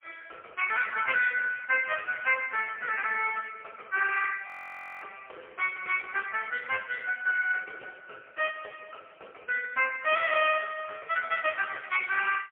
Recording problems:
phone line; 410 Hz to 3.3 kHz, AMR-NB, then MP3
audio freezing; at 4.5 s for 0.5 s

